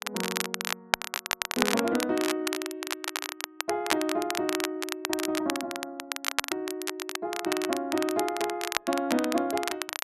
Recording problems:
crackle; vinyl, SNR 2 dB

